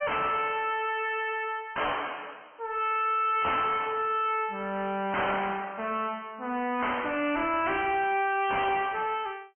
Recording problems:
low-pass filter; nothing above 2.7 kHz
codec artefacts; AAC, log-spectral distance 2 dB
distortion; soft clipping, signal-to-distortion ratio 6 dB

